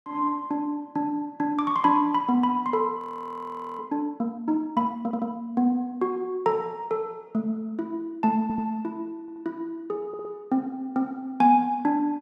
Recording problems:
frozen audio; at 3 s for 1 s
stutter; 4 times, first at 5 s

